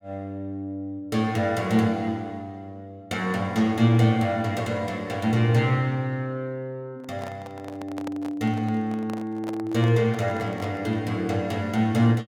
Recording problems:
microphone handling noise; from 7 to 11 s; peak -7 dB vs average level

